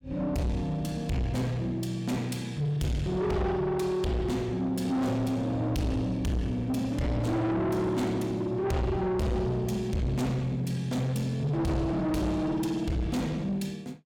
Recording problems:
distortion; soft clipping, signal-to-distortion ratio 7 dB

